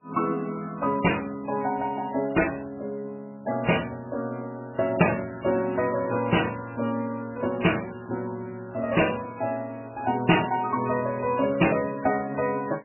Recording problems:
lossy codec; MP3, then MP3, log-spectral distance 4 dB, nothing above 2.9 kHz

